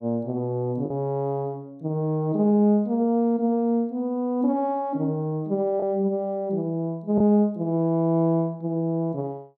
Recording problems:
lost packets; 0.8% of the sound replaced, filled with the last packet

